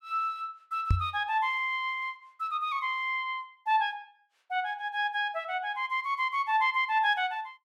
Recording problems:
knock on the microphone; at 1 s; peak +7 dB vs average level

